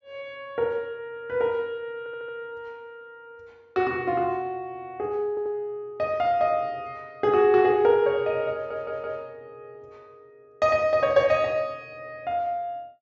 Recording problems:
treble missing; nothing above 8 kHz
stutter; at 2 s, at 5.5 s and at 8.5 s

